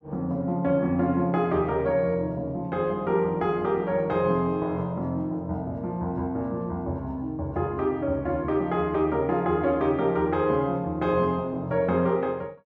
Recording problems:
none

